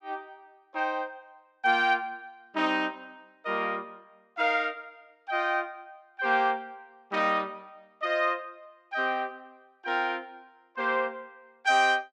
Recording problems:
none

